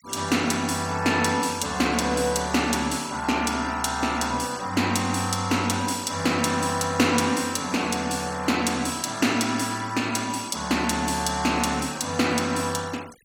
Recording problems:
noise reduction artefacts; signal-to-artefact ratio 19 dB

